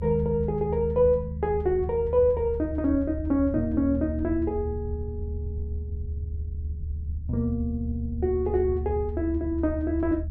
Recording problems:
rumble; below 78 Hz, strongest tone 74 Hz, SNR 7 dB

